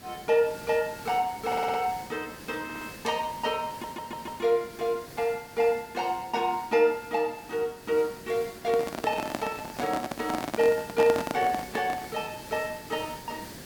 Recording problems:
background hiss; SNR 15 dB
audio stuttering; at 1.5 s, at 2.5 s and at 3.5 s
handling noise; from 8.5 to 12 s; peak +1 dB vs average level

